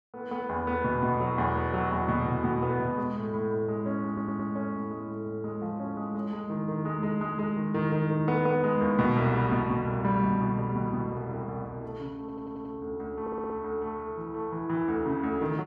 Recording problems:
audio stuttering; at 4 s, at 12 s and at 13 s

